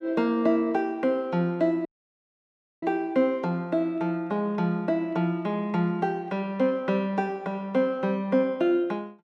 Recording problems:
dropout; at 2 s for 1 s

